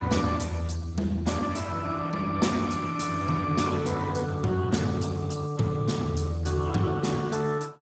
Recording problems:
codec artefacts; Speex, log-spectral distance 5 dB, nothing above 7.6 kHz

